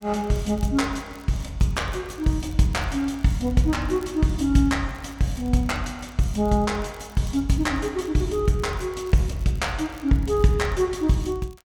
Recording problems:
crackling; vinyl, SNR 28 dB

